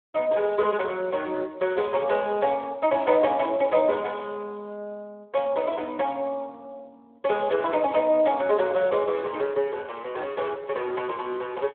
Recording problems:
phone line; 320 Hz to 3.3 kHz, Speex

